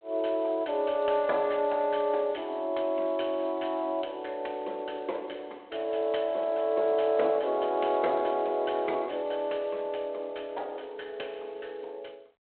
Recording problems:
phone line; 320 Hz to 3.5 kHz, G.726

